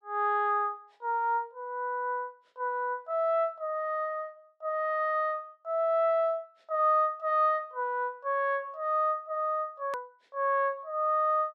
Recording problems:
hard cut with a click; at 10 s

